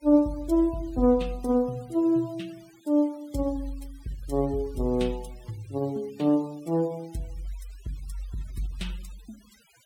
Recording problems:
noise reduction artefacts; signal-to-artefact ratio 26 dB

